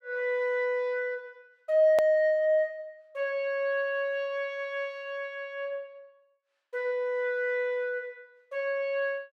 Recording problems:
edit click; at 2 s

